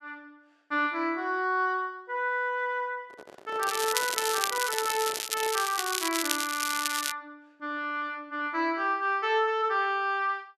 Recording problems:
microphone handling noise; from 3 to 5.5 s; peak -11 dB vs average level
crackle; from 3.5 to 7 s; loose cable, SNR 2 dB

